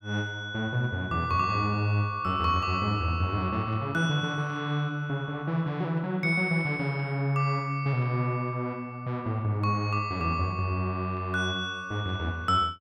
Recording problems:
none

